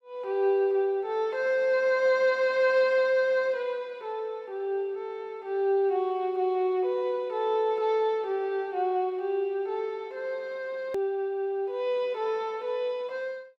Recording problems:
hard cut with a click; at 11 s

